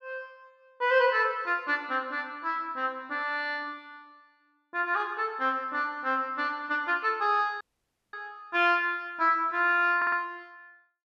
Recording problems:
dropout; at 7.5 s for 0.5 s
audio stuttering; at 10 s

